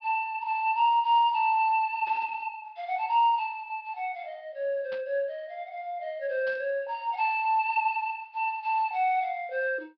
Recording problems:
low-pass filter; nothing above 5.5 kHz
burst of static; at 2 s, at 5 s and at 6.5 s; peak -14 dB vs average level

